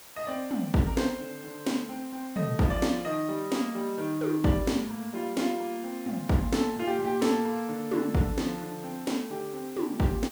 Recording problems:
background hiss; slope -1 dB per octave, SNR 17 dB

